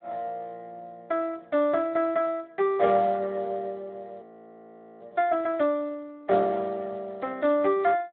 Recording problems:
phone line; 86 Hz to 3.5 kHz, Speex
audio freezing; at 4 s for 1 s

